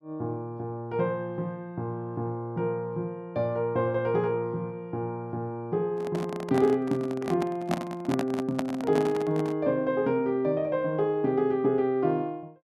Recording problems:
microphone handling noise; from 6 to 9.5 s; peak +2 dB vs average level

